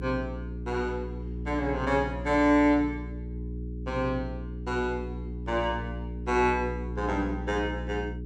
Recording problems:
electrical hum; 60 Hz, harmonics up to 420 Hz, SNR 8 dB

